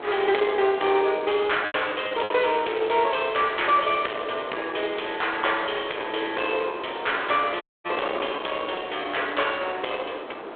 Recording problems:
phone line; 300 Hz to 3.6 kHz, G.726
distorted audio; soft clipping, signal-to-distortion ratio 10 dB
wind noise; below 1.2 kHz, SNR 12 dB
lost packets; 2% of the sound replaced, filled with repeated pitch periods
dropout; at 7.5 s

